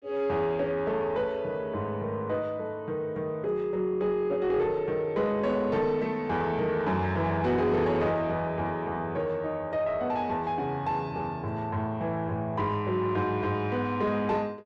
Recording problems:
distortion; soft clipping, signal-to-distortion ratio 12 dB

